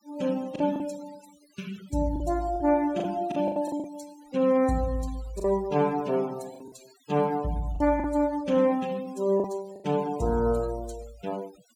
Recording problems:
noise reduction artefacts; signal-to-artefact ratio 21 dB
packet loss; 7% of the sound replaced, filled with the last packet

